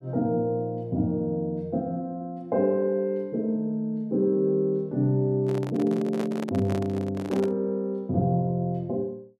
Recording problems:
microphone handling noise; from 5.5 to 7.5 s; peak -3 dB vs average level

